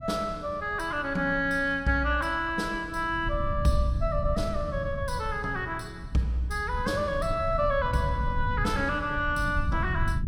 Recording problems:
low-frequency rumble; below 110 Hz, SNR 7 dB

